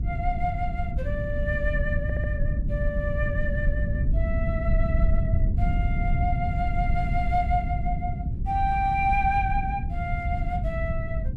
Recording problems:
low-frequency rumble; below 110 Hz, SNR -2 dB
stutter; at 2 s

